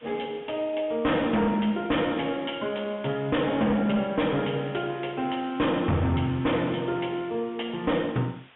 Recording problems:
low-pass filter; nothing above 3.6 kHz
distorted audio; hard clipping, signal-to-distortion ratio 8 dB
hiss; SNR 27 dB

